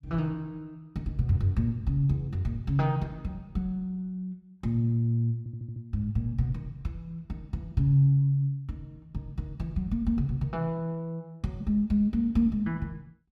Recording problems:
audio stuttering; at 5.5 s

